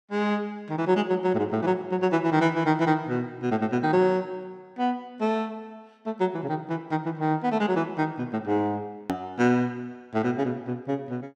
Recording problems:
hard cut with a click; at 9 s

